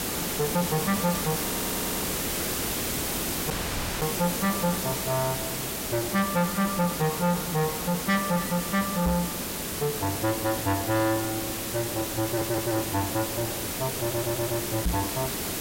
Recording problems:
distortion; soft clipping, signal-to-distortion ratio 10 dB
hiss; slope -3 dB per octave, SNR 1 dB
audio stuttering; at 1.5 s, at 12 s and at 14 s
audio cutting out; at 3.5 s for 0.5 s
microphone bump; at 9 s and at 15 s; peak +4 dB vs average level

